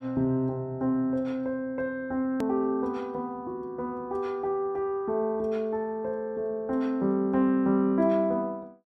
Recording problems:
click at an edit; at 2.5 s

